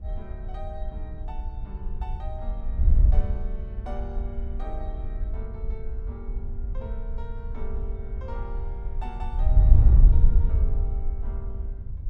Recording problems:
wind noise; below 62 Hz, SNR -15 dB

